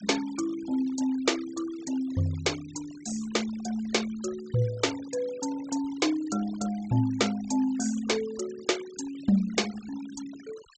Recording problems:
low-pass filter; nothing above 8 kHz
denoising artefacts; signal-to-artefact ratio 17 dB

